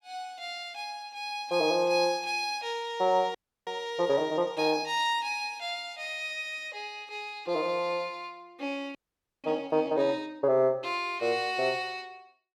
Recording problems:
audio freezing; at 3.5 s and at 9 s

